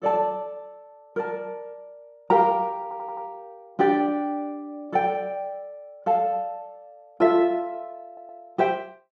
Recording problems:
audio stuttering; at 3 s and at 8 s

